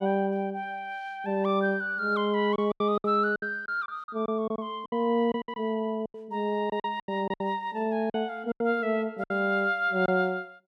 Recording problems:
packet loss; 10% of the sound replaced, filled with silence

